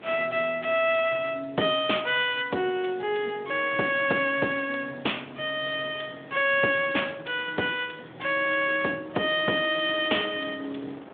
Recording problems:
telephone audio; 240 Hz to 3.5 kHz, Speex
wind on the microphone; below 1 kHz, SNR 22 dB

